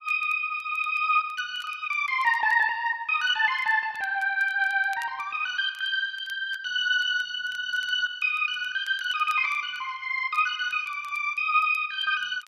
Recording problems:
crackling; vinyl, SNR 29 dB

